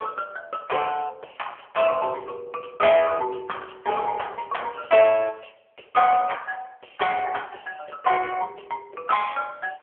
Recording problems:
phone line; 340 Hz to 3.3 kHz, AMR-NB

